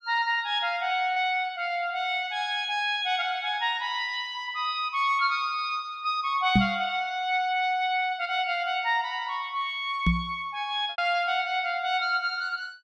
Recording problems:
packet loss; 0.9% of the sound replaced, filled with repeated pitch periods
microphone thump; at 6.5 s and at 10 s; peak +8 dB vs average level

